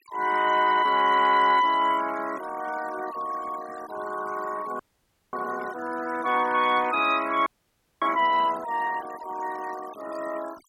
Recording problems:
denoising artefacts; signal-to-artefact ratio 17 dB
frozen audio; at 5 s for 0.5 s and at 7.5 s for 0.5 s

